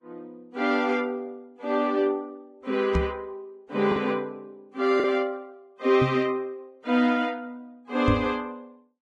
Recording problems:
codec artefacts; Vorbis, log-spectral distance 2 dB, nothing above 10.4 kHz
lost packets; 1% of the sound replaced, filled with the last packet
knock on the microphone; at 3 s, at 6 s and at 8 s; peak +4 dB vs average level

